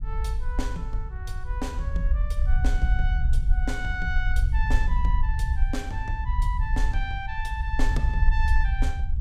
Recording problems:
rumble; below 60 Hz, SNR -7 dB

